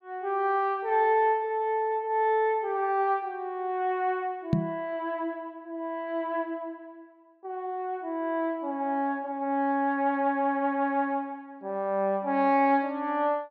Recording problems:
knock on the microphone; at 4.5 s; peak +7 dB vs average level

